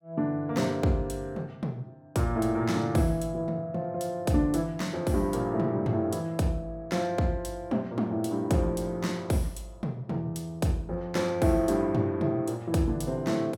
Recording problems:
none

